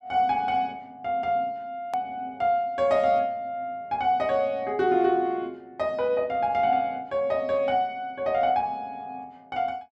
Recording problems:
hard cut with a click; at 2 s

